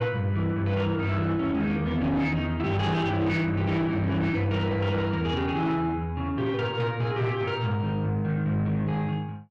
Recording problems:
distorted audio; soft clipping, signal-to-distortion ratio 10 dB

